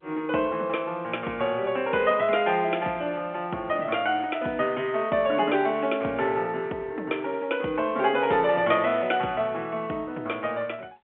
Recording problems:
telephone audio; 260 Hz to 3.4 kHz, G.711

